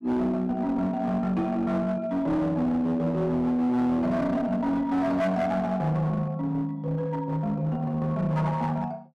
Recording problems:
distorted audio; hard clipping, uneven, signal-to-distortion ratio 10 dB

